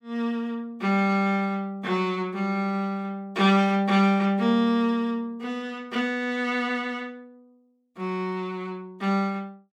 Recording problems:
none

